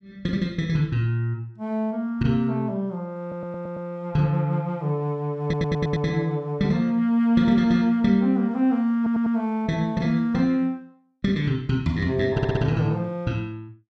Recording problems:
audio stuttering; 4 times, first at 3 s

